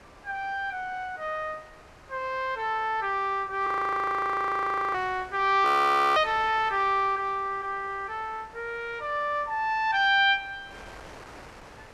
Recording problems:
wind on the microphone; below 1.9 kHz, SNR 22 dB
frozen audio; at 3.5 s for 1.5 s and at 5.5 s for 0.5 s

